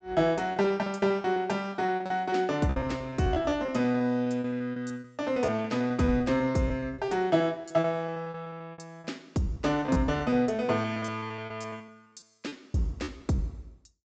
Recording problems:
treble cut off; nothing above 8 kHz
packet loss; 17% of the sound replaced, filled with repeated pitch periods

